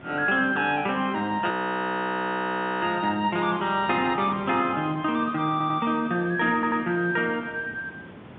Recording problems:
telephone audio; 130 Hz to 3.7 kHz, G.711
wind on the microphone; below 870 Hz, SNR 18 dB
frozen audio; at 1.5 s for 1.5 s
audio stuttering; at 5.5 s and at 6.5 s

